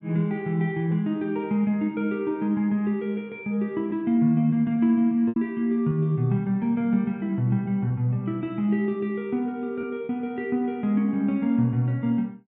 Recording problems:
lost packets; 1.5% of the sound replaced, filled with repeated pitch periods

